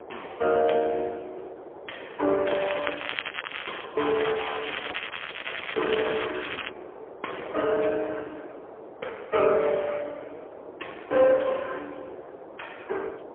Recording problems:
telephone audio; 320 Hz to 3.4 kHz, AMR-NB, then MP3
wind on the microphone; below 760 Hz, SNR 16 dB
crackling; from 2.5 to 4 s and from 4 to 6.5 s; loose cable, SNR 8 dB

